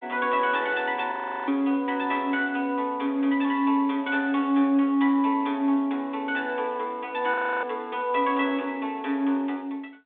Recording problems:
telephone audio; 220 Hz to 3.7 kHz, G.726
audio freezing; at 1 s and at 7.5 s

